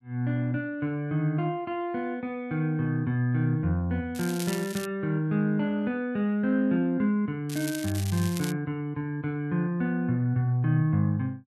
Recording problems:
crackle; at 4 s and from 7.5 to 8.5 s; loose cable, SNR 11 dB

